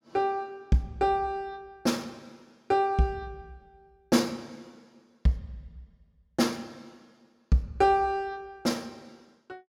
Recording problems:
none

